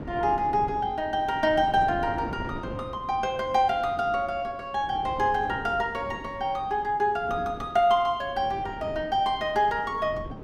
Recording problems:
wind noise; below 390 Hz, SNR 14 dB

